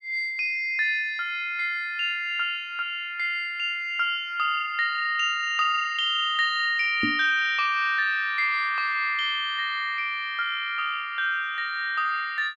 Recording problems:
microphone thump; at 7 s; peak 0 dB vs average level

